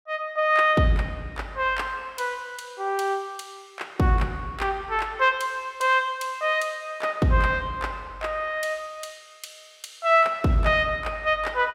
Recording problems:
none

